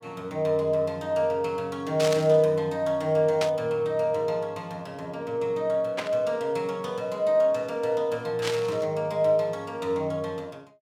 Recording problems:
static burst; 4 times, first at 2 s; peak 0 dB vs average level

